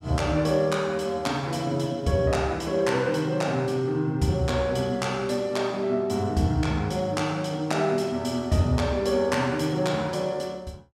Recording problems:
none

